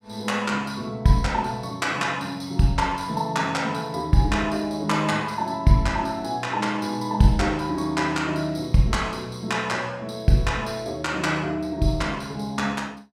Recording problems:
none

